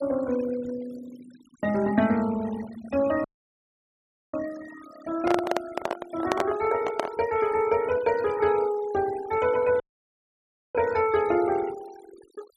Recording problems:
noise reduction artefacts; signal-to-artefact ratio 17 dB
audio cutting out; at 3 s for 1 s and at 10 s for 1 s
handling noise; from 5 to 7 s; peak +4 dB vs average level

